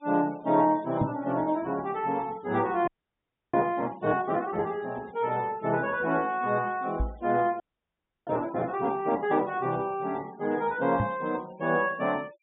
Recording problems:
low-pass filter; nothing above 4 kHz
noise reduction artefacts; signal-to-artefact ratio 25 dB
microphone bump; at 1 s, at 7 s and at 11 s; peak +3 dB vs average level
audio freezing; at 3 s for 0.5 s and at 7.5 s for 0.5 s

